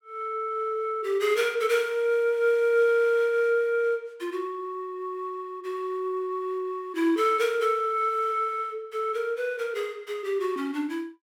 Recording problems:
none

